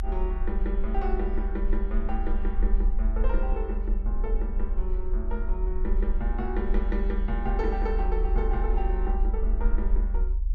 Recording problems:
rumble; below 40 Hz, strongest tone 38 Hz, SNR -5 dB

